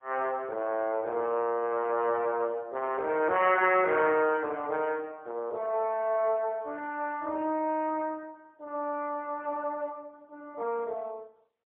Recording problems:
telephone audio; 340 Hz to 3.3 kHz, AMR-NB, then MP3

